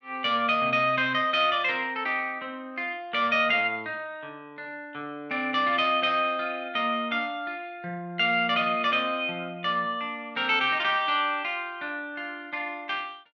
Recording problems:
none

